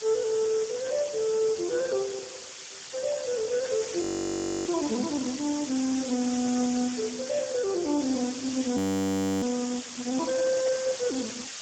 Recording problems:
lossy codec; Speex, log-spectral distance 17 dB, nothing above 17.7 kHz
background hiss; slope +3 dB per octave, SNR 8 dB
frozen audio; at 4 s for 0.5 s and at 9 s for 0.5 s

